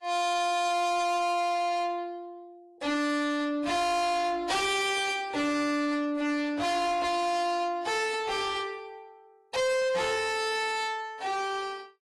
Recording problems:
codec artefacts; AAC, log-spectral distance 2 dB, nothing above 11.3 kHz
distorted audio; soft clipping, signal-to-distortion ratio 6 dB

